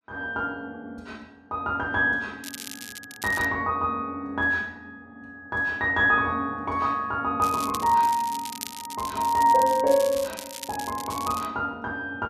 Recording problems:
crackle; from 2.5 to 3.5 s and from 7.5 to 11 s; loose cable, SNR 13 dB

